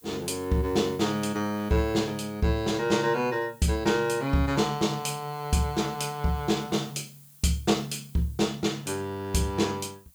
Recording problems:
background hiss; slope +2 dB per octave, SNR 24 dB

